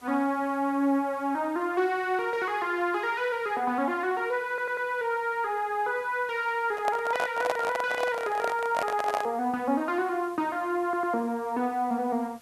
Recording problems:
hiss; slope -2 dB per octave, SNR 27 dB
audio stuttering; at 4.5 s and at 11 s
microphone handling noise; from 6.5 to 9.5 s; peak +3 dB vs average level

